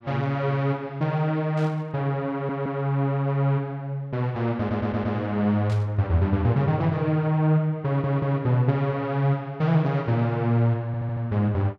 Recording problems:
burst of static; at 1.5 s and at 5.5 s; peak -14 dB vs average level
stutter; 4 times, first at 2.5 s

